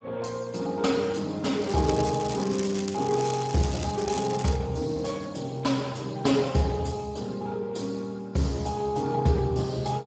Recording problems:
codec artefacts; Speex, log-spectral distance 6 dB, nothing above 7.6 kHz
crackling; from 1.5 to 4.5 s; loose cable, SNR 11 dB

